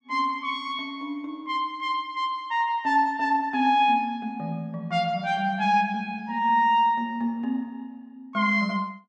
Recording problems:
none

